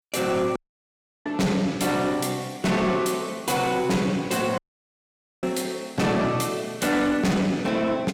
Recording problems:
distorted audio; soft clipping, signal-to-distortion ratio 10 dB
dropout; at 0.5 s for 0.5 s and at 4.5 s for 1 s

